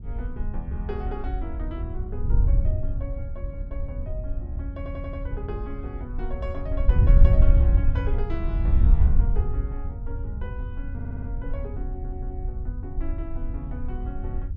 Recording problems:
wind on the microphone; below 74 Hz, SNR -11 dB
audio stuttering; at 5 s, at 11 s and at 12 s

